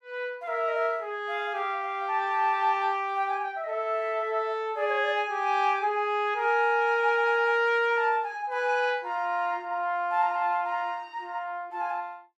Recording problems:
none

